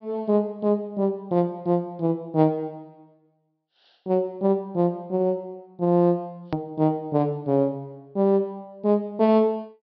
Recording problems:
low-pass filter; nothing above 5.5 kHz
hard cut with a click; at 6.5 s

